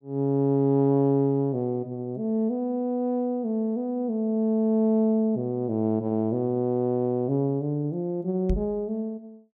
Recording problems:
knock on the microphone; at 8.5 s; peak +1 dB vs average level

